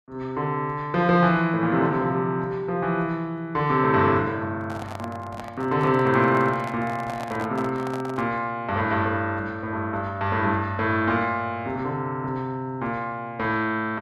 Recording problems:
handling noise; from 4.5 to 8.5 s; peak -7 dB vs average level

